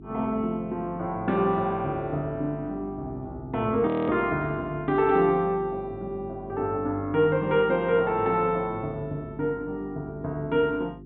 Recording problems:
treble cut off; nothing above 4 kHz
hum; 50 Hz, harmonics up to 400 Hz, SNR 16 dB
frozen audio; at 4 s

